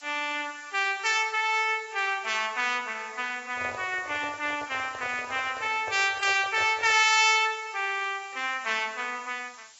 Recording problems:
lossy codec; AAC, log-spectral distance 16 dB, nothing above 7.1 kHz
hiss; slope +4 dB per octave, SNR 23 dB
microphone handling noise; from 3.5 to 7 s; peak -8 dB vs average level

